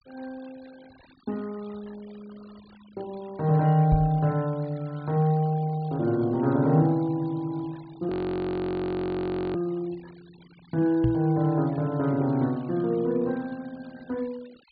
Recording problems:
treble missing; nothing above 4.6 kHz
denoising artefacts; signal-to-artefact ratio 27 dB
knock on the microphone; at 4 s and at 11 s; peak +4 dB vs average level
audio freezing; at 8 s for 1.5 s

